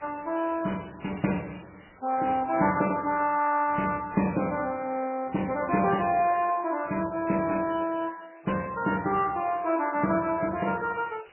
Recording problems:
lossy compression; MP2, then MP3, log-spectral distance 9 dB, nothing above 2.4 kHz
background hiss; SNR 28 dB

